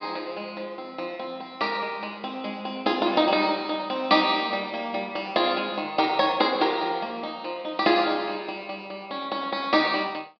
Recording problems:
low-pass filter; nothing above 5.5 kHz

